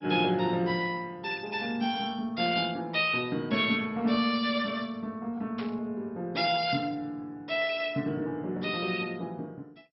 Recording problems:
lossy compression; MP2, log-spectral distance 3 dB, nothing above 4.9 kHz
burst of static; at 5.5 s; peak -8 dB vs average level

